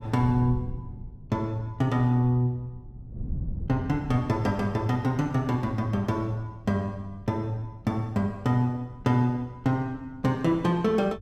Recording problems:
wind on the microphone; below 130 Hz, SNR 15 dB

